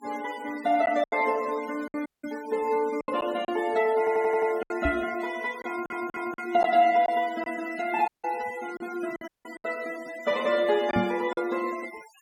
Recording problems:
noise reduction artefacts; signal-to-artefact ratio 18 dB
packet loss; 6% of the sound replaced, filled with silence
audio cutting out; at 2 s, at 8 s and at 9.5 s
stutter; at 4 s and at 5.5 s
microphone bump; at 5 s and at 11 s; peak +4 dB vs average level

